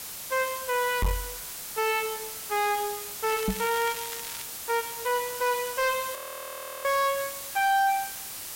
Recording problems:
distortion; hard clipping, uneven, signal-to-distortion ratio 11 dB
hiss; slope 0 dB per octave, SNR 7 dB
microphone bump; at 1 s and at 3.5 s; peak +4 dB vs average level
crackle; from 3.5 to 4.5 s; loose cable, SNR 12 dB
frozen audio; at 6 s for 0.5 s

